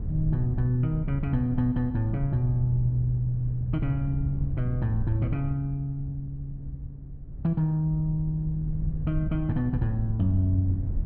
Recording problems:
wind on the microphone; below 100 Hz, SNR 8 dB

